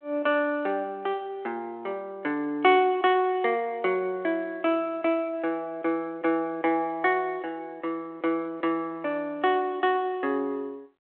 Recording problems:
phone line; 340 Hz to 3.5 kHz, G.726

